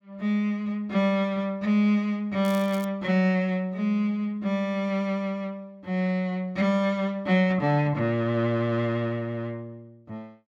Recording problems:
crackle; at 2.5 s; loose cable, SNR 21 dB

